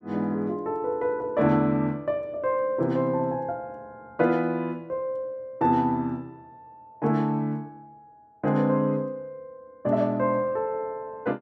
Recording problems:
none

